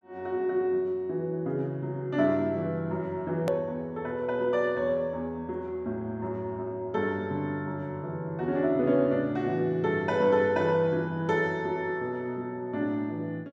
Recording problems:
edit click; at 3.5 s

